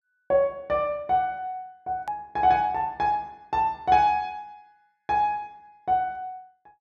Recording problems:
edit click; at 2 s

